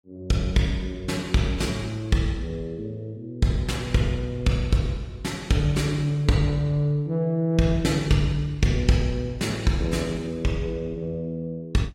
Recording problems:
codec artefacts; AAC, log-spectral distance 2 dB, nothing above 16 kHz

